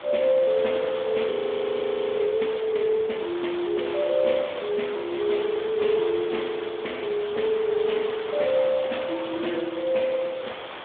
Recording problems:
phone line; 260 Hz to 3.6 kHz, Speex
background hiss; SNR 12 dB
frozen audio; at 1.5 s for 1 s

